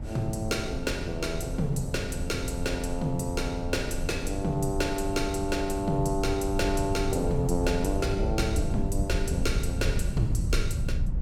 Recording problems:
rumble; below 100 Hz, SNR 3 dB
wind on the microphone; below 300 Hz, SNR 13 dB

